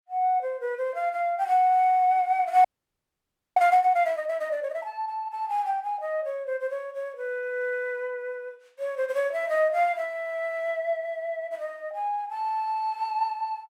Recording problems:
frozen audio; at 2.5 s for 1 s

